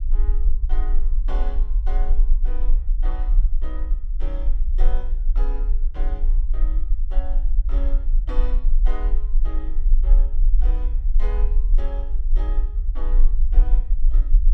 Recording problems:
rumble; below 36 Hz, strongest tone 22 Hz, SNR -17 dB

